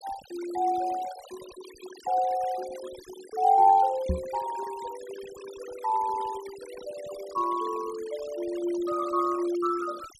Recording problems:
denoising artefacts; signal-to-artefact ratio 18 dB
microphone thump; at 4 s; peak +3 dB vs average level

